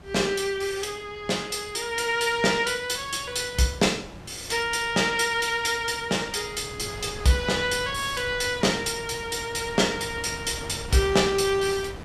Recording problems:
wind on the microphone; below 820 Hz, SNR 16 dB

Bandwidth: 14 kHz